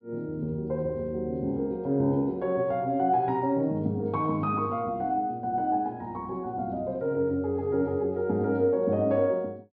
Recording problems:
treble cut off; nothing above 5.5 kHz

